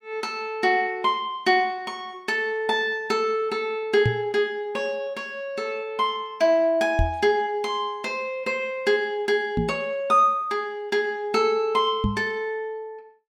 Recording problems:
microphone thump; 4 times, first at 4 s; peak +4 dB vs average level

